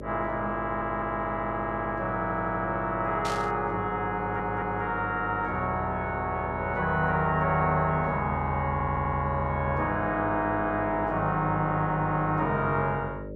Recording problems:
mains hum; 50 Hz, harmonics up to 600 Hz, SNR 11 dB
audio stuttering; 4 times, first at 0.5 s
static burst; at 3.5 s; peak -5 dB vs average level

